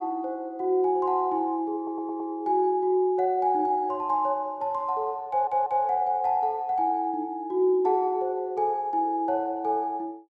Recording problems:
stutter; at 2 s and at 5.5 s

